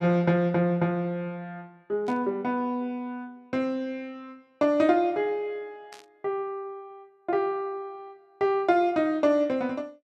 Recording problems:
burst of static; at 2 s and at 6 s; peak -15 dB vs average level

